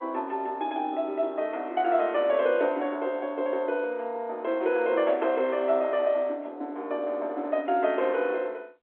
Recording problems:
telephone audio; 240 Hz to 3.6 kHz, G.711

